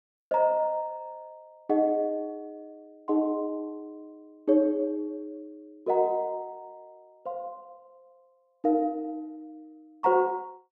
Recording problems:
none

